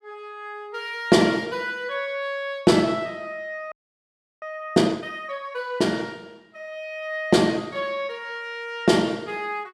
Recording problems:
audio freezing; at 3.5 s for 0.5 s

